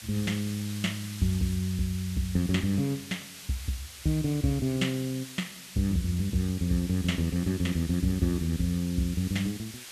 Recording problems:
hiss; slope +2 dB per octave, SNR 13 dB

